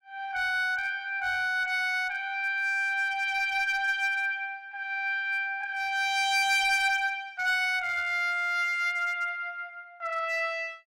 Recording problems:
distortion; hard clipping, uneven, signal-to-distortion ratio 11 dB

